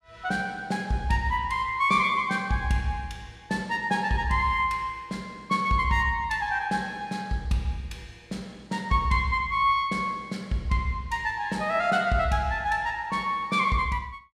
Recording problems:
none

